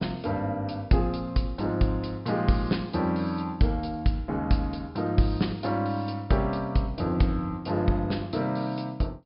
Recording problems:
treble missing; nothing above 5.5 kHz

